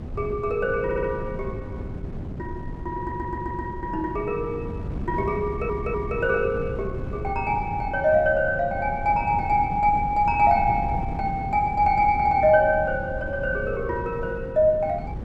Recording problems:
wind on the microphone; below 210 Hz, SNR 10 dB
audio stuttering; at 1 s, at 3 s and at 5.5 s

